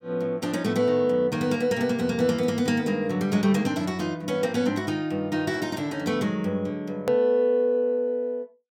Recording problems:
hard cut with a click; at 7 s

